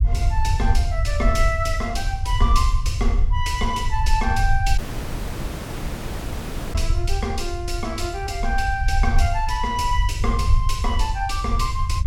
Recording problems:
low-frequency rumble; below 72 Hz, SNR -1 dB
audio cutting out; at 5 s for 2 s

